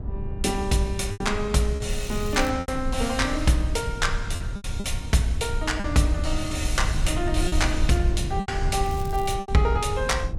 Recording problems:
rumble; below 90 Hz, SNR 5 dB
wind noise; below 410 Hz, SNR 21 dB
lost packets; 6% of the sound replaced, filled with repeated pitch periods
crackle; at 2 s and at 9 s; loose cable, SNR 20 dB

